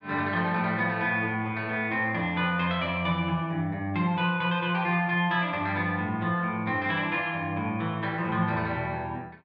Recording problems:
none

